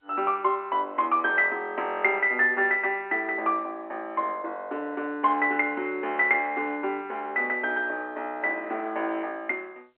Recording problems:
phone line; 300 Hz to 3.5 kHz, G.711

